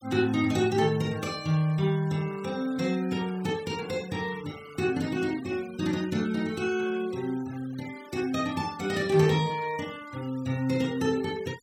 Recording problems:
denoising artefacts; signal-to-artefact ratio 20 dB

